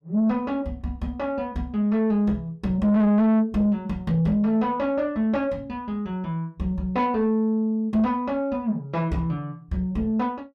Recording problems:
distorted audio; soft clipping, signal-to-distortion ratio 8 dB

